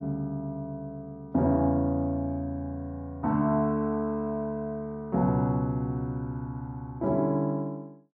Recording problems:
none

